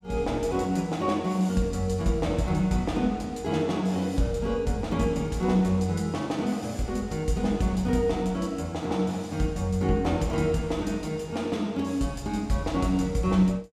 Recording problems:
none

